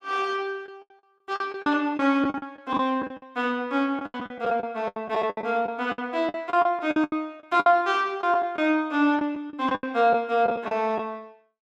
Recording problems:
packet loss; 14% of the sound replaced, filled with the last packet

